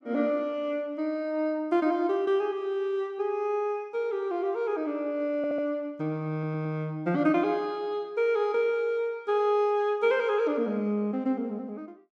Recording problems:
audio stuttering; at 5.5 s and at 6.5 s

